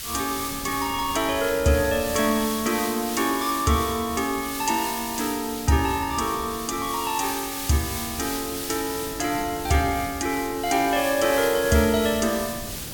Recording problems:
background hiss; SNR 8 dB
wind noise; below 360 Hz, SNR 18 dB

